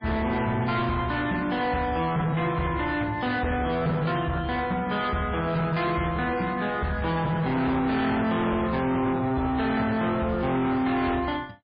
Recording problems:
lossy codec; MP3, log-spectral distance 3 dB, nothing above 4.6 kHz
distortion; hard clipping, uneven, signal-to-distortion ratio 7 dB

